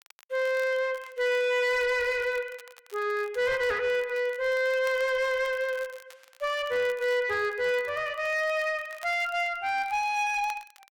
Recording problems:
distorted audio; soft clipping, signal-to-distortion ratio 9 dB
crackling; vinyl, SNR 25 dB

